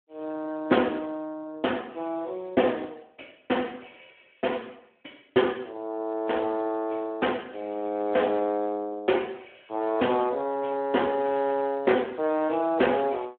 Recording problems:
telephone audio; 260 Hz to 3.3 kHz, Speex

